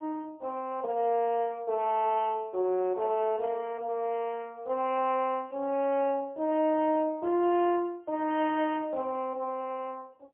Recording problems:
phone line; 280 Hz to 3.4 kHz, AMR-NB, then MP3

